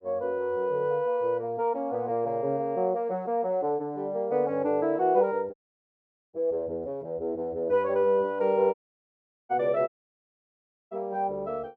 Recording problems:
audio cutting out; at 5.5 s for 1 s, at 8.5 s for 1 s and at 10 s for 1 s

